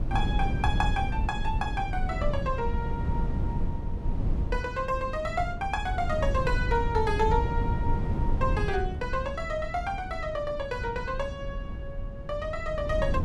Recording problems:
wind noise; below 120 Hz, SNR 1 dB

